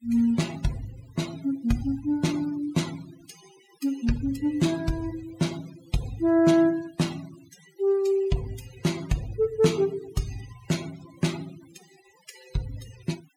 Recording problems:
denoising artefacts; signal-to-artefact ratio 17 dB

